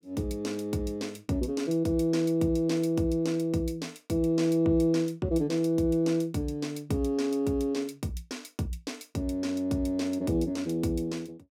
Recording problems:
none

